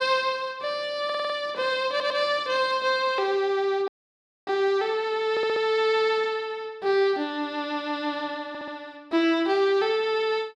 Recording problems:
stutter; 4 times, first at 1 s
audio cutting out; at 4 s for 0.5 s

